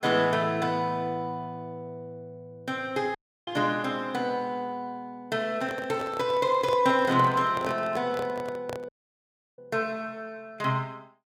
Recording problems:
audio cutting out; at 3 s and at 9 s for 0.5 s
handling noise; from 5.5 to 9 s; peak -4 dB vs average level

